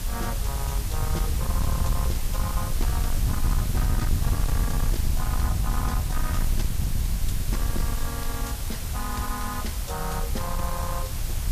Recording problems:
distorted audio; soft clipping, signal-to-distortion ratio 8 dB
background hiss; slope -1 dB per octave, SNR 2 dB
rumble; below 84 Hz, SNR -5 dB

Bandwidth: 14.5 kHz